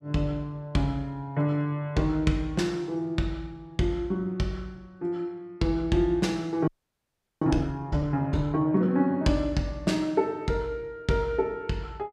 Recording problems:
audio freezing; at 6.5 s for 0.5 s

